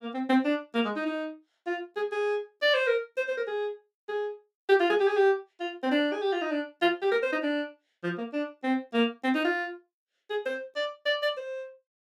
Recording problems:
none

